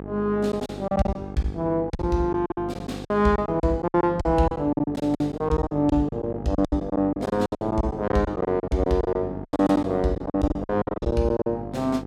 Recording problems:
hum; 50 Hz, harmonics up to 1.3 kHz, SNR 12 dB
packet loss; 18% of the sound replaced, filled with silence

